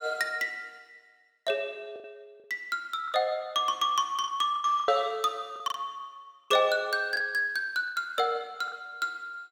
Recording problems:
packet loss; 7% of the sound replaced, filled with the last packet

